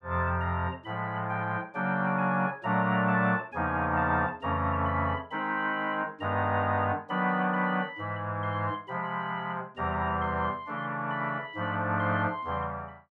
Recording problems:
none

